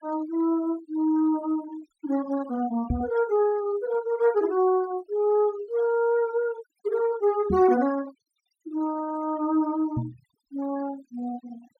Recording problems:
denoising artefacts; signal-to-artefact ratio 22 dB
microphone bump; at 3 s, at 7.5 s and at 10 s; peak +1 dB vs average level

